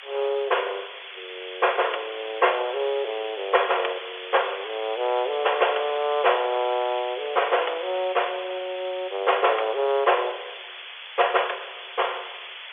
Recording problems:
telephone audio; 370 Hz to 3.5 kHz, G.711
hiss; SNR 12 dB

